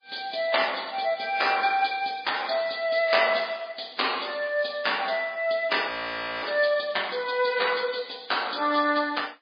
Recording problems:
lossy codec; MP3, log-spectral distance 9 dB, nothing above 4.6 kHz
audio freezing; at 6 s for 0.5 s

